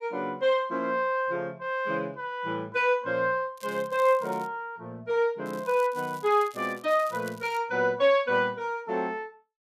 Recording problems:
crackle; at 3.5 s and from 5.5 to 7.5 s; loose cable, SNR 23 dB

